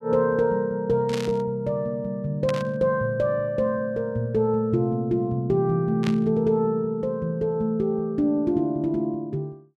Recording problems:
static burst; at 1 s, at 2.5 s and at 6 s; peak -5 dB vs average level

